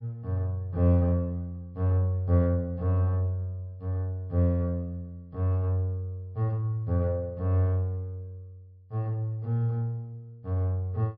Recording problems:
treble missing; nothing above 5.5 kHz

